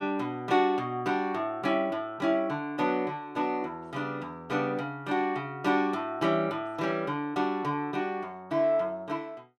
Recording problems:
none

